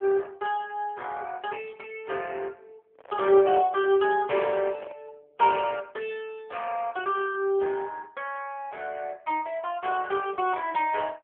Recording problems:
phone line; 150 Hz to 3.3 kHz, AMR-NB
microphone handling noise; from 3 to 5 s; peak -13 dB vs average level

